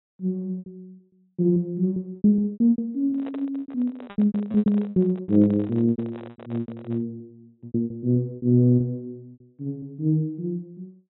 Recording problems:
low-pass filter; nothing above 3.9 kHz
packet loss; 16% of the sound replaced, filled with repeated pitch periods
handling noise; from 3 to 7 s; peak -11 dB vs average level

